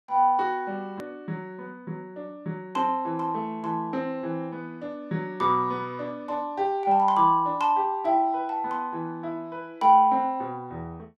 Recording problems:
edit click; at 1 s

